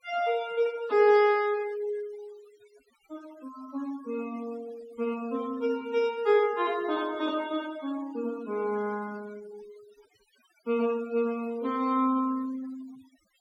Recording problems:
denoising artefacts; signal-to-artefact ratio 21 dB

